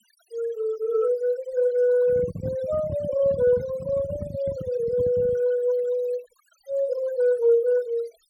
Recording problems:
noise reduction artefacts; signal-to-artefact ratio 21 dB
handling noise; from 2 to 5.5 s; peak -4 dB vs average level

